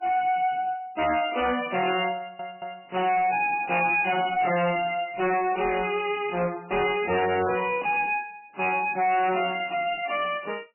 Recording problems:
lossy compression; MP3, log-spectral distance 6 dB, nothing above 2.5 kHz
distortion; hard clipping, signal-to-distortion ratio 6 dB
stutter; at 2 s

